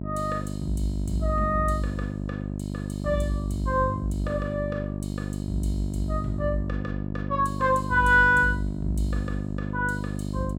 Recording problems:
electrical hum; 50 Hz, harmonics up to 700 Hz, SNR 5 dB

